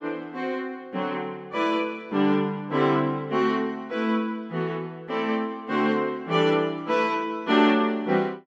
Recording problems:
none

